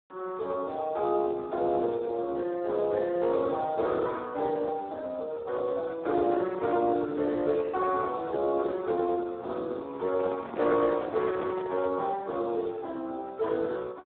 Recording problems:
phone line; 300 Hz to 2.1 kHz, Speex
microphone handling noise; from 10 to 12 s; peak -7 dB vs average level

